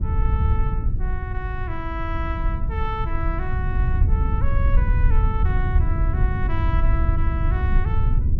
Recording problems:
electrical hum; 60 Hz, harmonics up to 1.1 kHz, SNR 20 dB
rumble; below 82 Hz, SNR -9 dB

